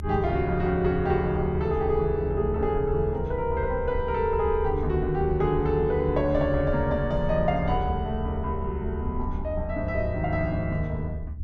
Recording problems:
low-frequency rumble; below 76 Hz, SNR 7 dB

